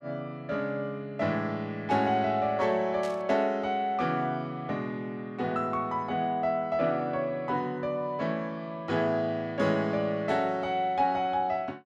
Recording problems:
burst of static; at 3 s; peak -11 dB vs average level

